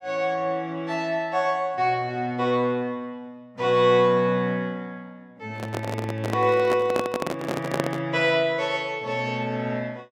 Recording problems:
handling noise; from 5.5 to 8 s; peak +3 dB vs average level

